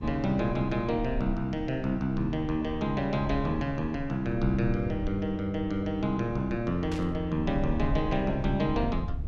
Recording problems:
rumble; below 70 Hz, SNR 10 dB
static burst; at 7 s; peak -8 dB vs average level

